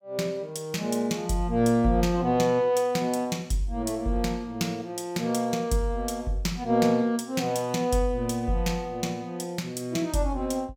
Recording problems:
none

